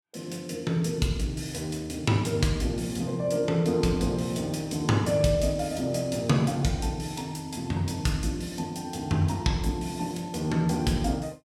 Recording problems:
none

